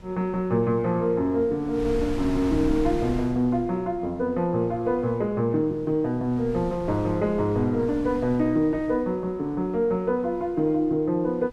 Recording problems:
wind noise; below 190 Hz, SNR 14 dB

